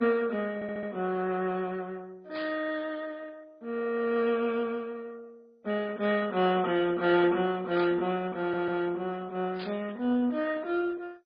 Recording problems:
lossy compression; MP3, then MP2, log-spectral distance 3 dB
audio stuttering; at 0.5 s and at 8.5 s
burst of static; at 2.5 s, at 8 s and at 9.5 s; peak -7 dB vs average level

